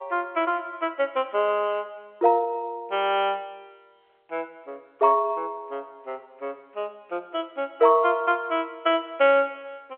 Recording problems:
phone line; 320 Hz to 3.3 kHz, G.711

